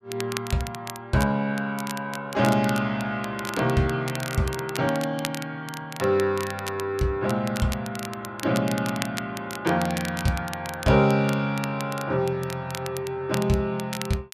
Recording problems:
crackle; vinyl, SNR 12 dB

